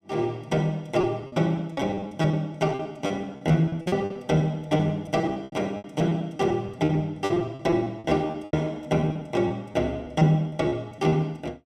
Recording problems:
packet loss; 17% of the sound replaced, filled with repeated pitch periods

